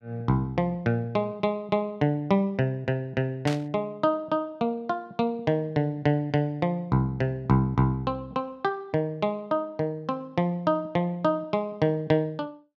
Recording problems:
burst of static; at 3.5 s; peak -2 dB vs average level

